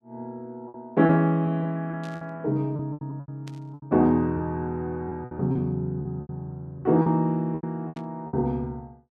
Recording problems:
lost packets; 11% of the sound replaced, filled with repeated pitch periods
static burst; at 2 s, at 3.5 s and at 8 s; peak -15 dB vs average level

